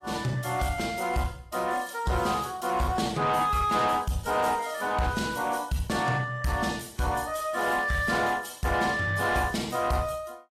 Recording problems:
lossy compression; AAC, log-spectral distance 4 dB, nothing above 13.5 kHz
distorted audio; soft clipping, signal-to-distortion ratio 11 dB

